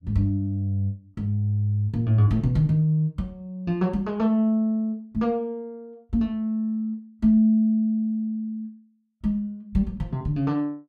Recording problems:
none

